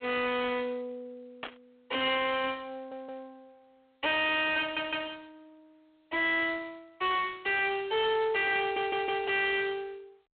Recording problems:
telephone audio; 260 Hz to 3.4 kHz, G.726
distorted audio; hard clipping, signal-to-distortion ratio 6 dB
static burst; at 1.5 s; peak -5 dB vs average level
audio stuttering; at 3 s, at 4.5 s and at 8.5 s

